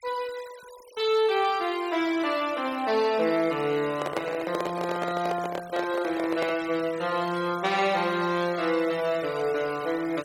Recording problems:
noise reduction artefacts; signal-to-artefact ratio 17 dB
handling noise; from 4 to 6.5 s; peak +1 dB vs average level

